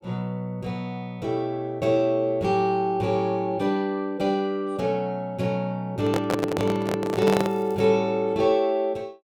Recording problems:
microphone handling noise; from 6 to 7.5 s; peak +3 dB vs average level
crackle; at 7.5 s; loose cable, SNR 29 dB

